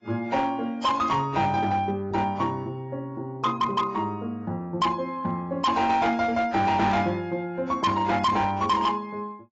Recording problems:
lossy compression; AAC, log-spectral distance 2 dB, nothing above 7.3 kHz
distorted audio; hard clipping, signal-to-distortion ratio 8 dB

